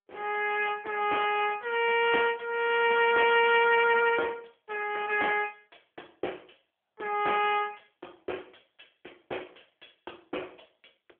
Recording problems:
phone line; 320 Hz to 3.3 kHz, AMR-NB

